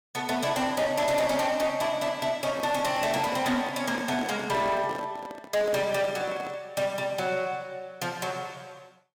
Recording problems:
distortion; hard clipping, uneven, signal-to-distortion ratio 12 dB
microphone handling noise; from 2.5 to 6.5 s; peak -3 dB vs average level

